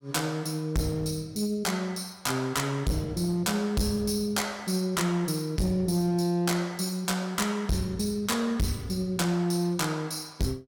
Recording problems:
distortion; hard clipping, uneven, signal-to-distortion ratio 7 dB

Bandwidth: 17 kHz